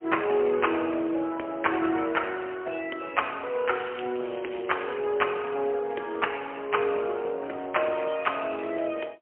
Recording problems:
phone line; 280 Hz to 3.2 kHz, AMR-NB, then MP3
crackle; from 3.5 to 5 s; loose cable, SNR 18 dB

